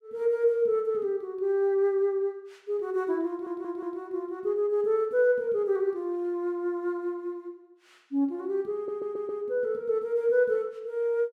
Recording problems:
stutter; at 3.5 s and at 9 s

